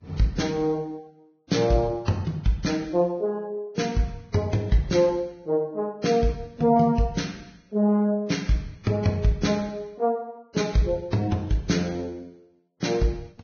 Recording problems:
codec artefacts; Vorbis, log-spectral distance 3 dB, nothing above 6.5 kHz

